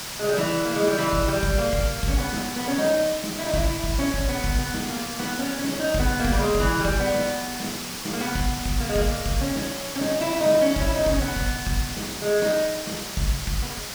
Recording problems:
background hiss; slope 0 dB per octave, SNR 7 dB

